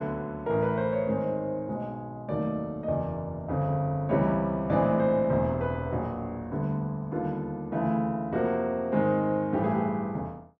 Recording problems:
none

